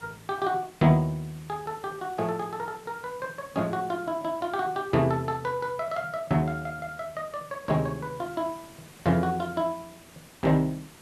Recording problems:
hiss; slope -3 dB per octave, SNR 22 dB

